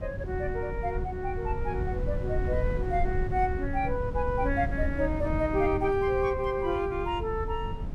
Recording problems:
wind on the microphone; below 110 Hz, SNR 5 dB

